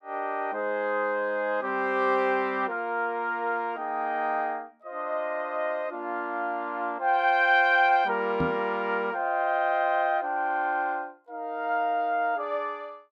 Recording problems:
microphone thump; at 8.5 s; peak +1 dB vs average level

